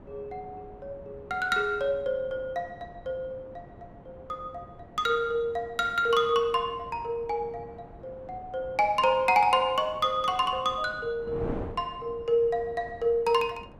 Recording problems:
wind noise; below 520 Hz, SNR 19 dB

